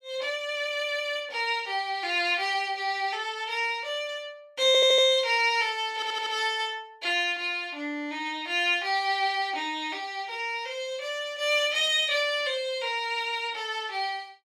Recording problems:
stutter; at 4.5 s and at 6 s

